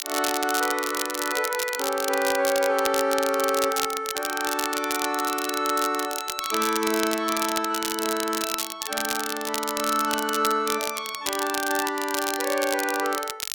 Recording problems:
crackling; vinyl, SNR 5 dB

